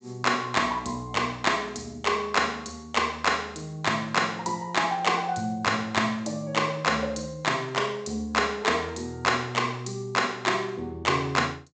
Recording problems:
treble missing; nothing above 8 kHz

